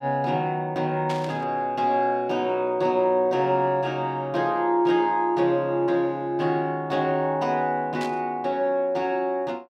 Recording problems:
burst of static; at 1 s and at 8 s; peak -8 dB vs average level

